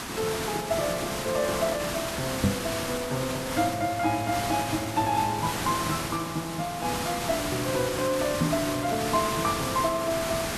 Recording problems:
background hiss; slope -2 dB per octave, SNR 3 dB
knock on the microphone; at 2.5 s and at 8.5 s; peak +7 dB vs average level

